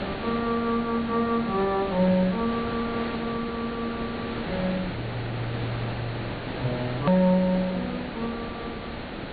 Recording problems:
treble cut off; nothing above 4.5 kHz
hiss; SNR 7 dB
hard cut with a click; at 7 s

